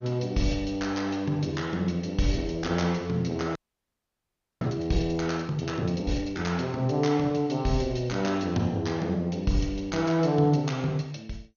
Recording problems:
lossy codec; MP2, log-spectral distance 3 dB, nothing above 6.7 kHz
audio freezing; at 3.5 s for 1 s

